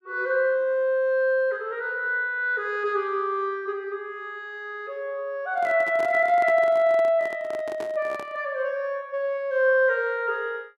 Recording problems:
handling noise; from 5.5 to 8.5 s; peak -9 dB vs average level

